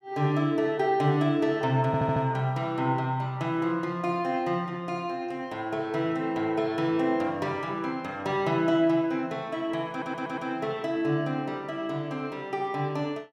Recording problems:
audio stuttering; at 2 s and at 10 s

